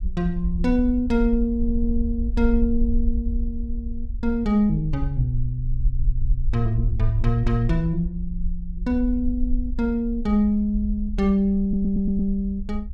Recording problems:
rumble; below 52 Hz, SNR 6 dB
stutter; at 1.5 s, at 6 s and at 12 s

